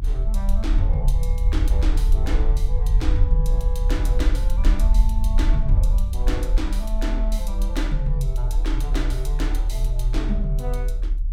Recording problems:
rumble; below 46 Hz, strongest tone 36 Hz, SNR -7 dB

